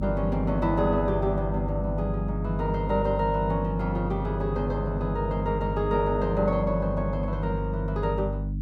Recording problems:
mains hum; 50 Hz, harmonics up to 300 Hz, SNR 3 dB

